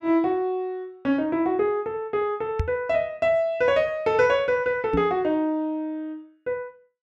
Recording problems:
knock on the microphone; at 2.5 s and at 5 s; peak +2 dB vs average level

